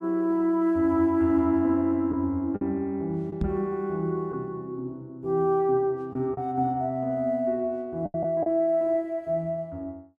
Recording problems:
packet loss; 3% of the sound replaced, filled with the last packet
microphone thump; at 3.5 s; peak +1 dB vs average level

